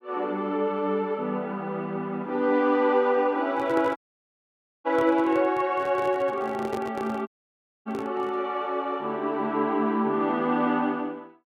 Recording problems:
handling noise; from 3.5 to 8.5 s; peak -4 dB vs average level
audio cutting out; at 4 s for 1 s and at 7.5 s for 0.5 s

